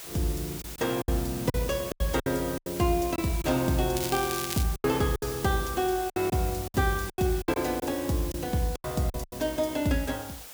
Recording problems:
background hiss; slope 0 dB per octave, SNR 10 dB
packet loss; 10% of the sound replaced, filled with silence
crackling; at 4 s; loose cable, SNR 6 dB

